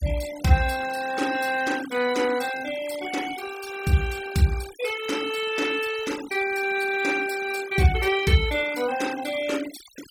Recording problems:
noise reduction artefacts; signal-to-artefact ratio 14 dB

